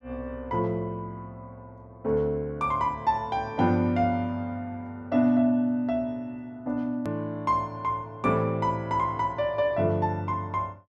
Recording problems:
click at an edit; at 7 s

